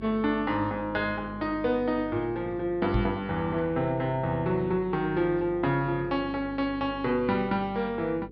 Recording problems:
low-pass filter; nothing above 5.5 kHz
hum; 50 Hz, harmonics up to 500 Hz, SNR 16 dB
microphone thump; at 3 s; peak +4 dB vs average level

